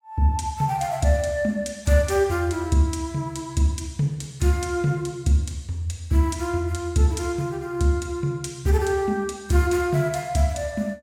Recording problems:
none

